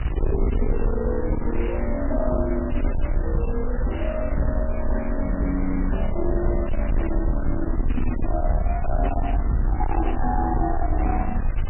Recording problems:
codec artefacts; MP3, log-spectral distance 6 dB, nothing above 3 kHz
distortion; hard clipping, signal-to-distortion ratio 8 dB
hiss; SNR 10 dB
low-frequency rumble; below 64 Hz, SNR 0 dB

